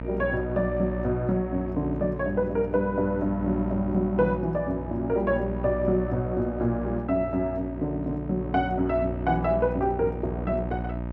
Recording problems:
hum; 60 Hz, harmonics up to 960 Hz, SNR 7 dB

